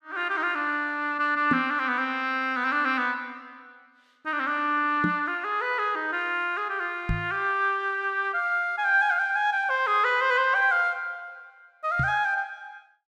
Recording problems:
knock on the microphone; 4 times, first at 1.5 s; peak +3 dB vs average level

